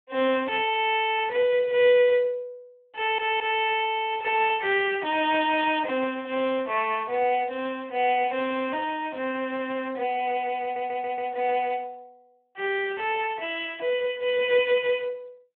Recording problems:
telephone audio; 280 Hz to 3.4 kHz, Speex
audio stuttering; at 3 s and at 11 s

